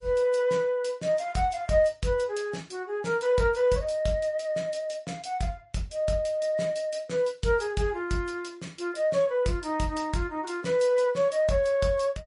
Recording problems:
lossy codec; MP3, log-spectral distance 2 dB, nothing above 10.4 kHz

